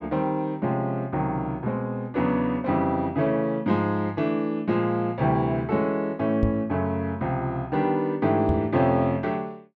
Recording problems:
microphone thump; at 6.5 s and at 8.5 s; peak +3 dB vs average level

